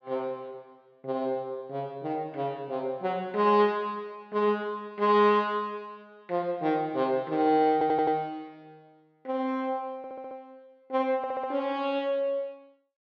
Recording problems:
stutter; at 7.5 s, at 10 s and at 11 s

